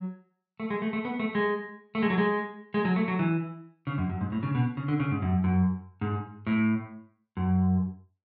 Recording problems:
low-pass filter; nothing above 6.2 kHz

